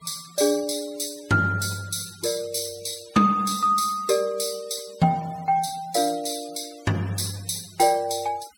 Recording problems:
denoising artefacts; signal-to-artefact ratio 21 dB

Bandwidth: 17 kHz